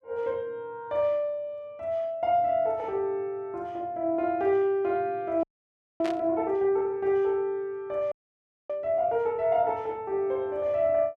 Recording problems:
audio freezing; at 5.5 s for 0.5 s and at 8 s for 0.5 s
burst of static; at 6 s; peak -6 dB vs average level

